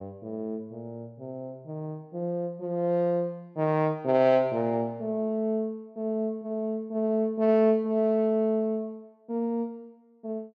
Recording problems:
none

